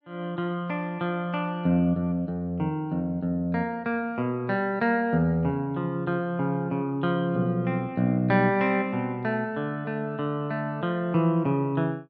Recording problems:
none

